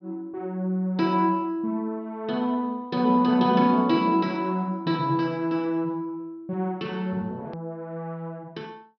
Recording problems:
low-pass filter; nothing above 5.5 kHz
hard cut with a click; at 7.5 s

